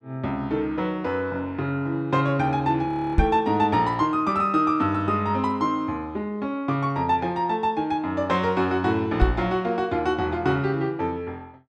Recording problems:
audio freezing; at 3 s
microphone bump; at 3 s and at 9 s; peak +8 dB vs average level

